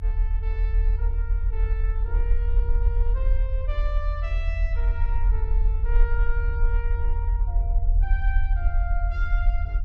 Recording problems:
rumble; below 46 Hz, SNR -13 dB

